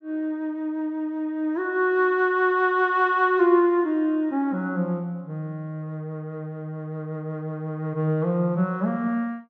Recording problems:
none

